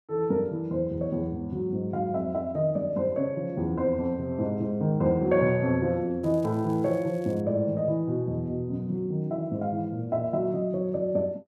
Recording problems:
crackle; from 6 to 7.5 s; loose cable, SNR 29 dB

